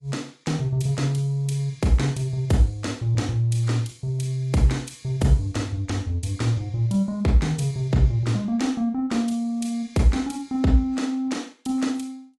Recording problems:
lossy codec; AAC, log-spectral distance 2 dB

